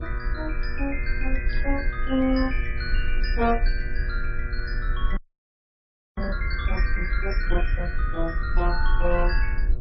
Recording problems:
lossy codec; MP3, then MP2, log-spectral distance 2 dB, nothing above 5 kHz
electrical hum; 60 Hz, harmonics up to 1.2 kHz, SNR 14 dB
low-frequency rumble; below 46 Hz, SNR 0 dB
static burst; at 1.5 s and at 8.5 s; peak -12 dB vs average level
audio freezing; at 5 s for 1 s

